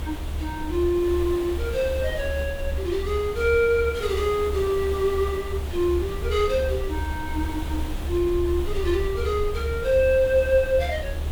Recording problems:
background hiss; SNR 14 dB
rumble; below 74 Hz, strongest tone 72 Hz, SNR 7 dB

